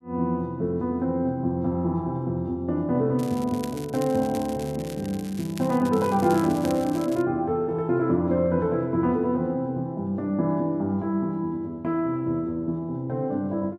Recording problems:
crackling; from 3 to 7 s; loose cable, SNR 18 dB

